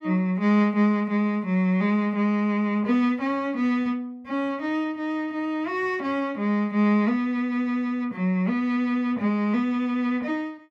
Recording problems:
none

